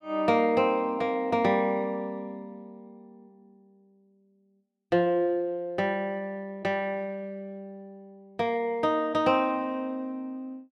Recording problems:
none

